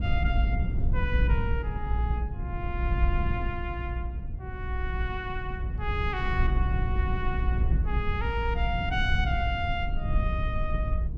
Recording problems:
rumble; below 84 Hz, SNR -4 dB

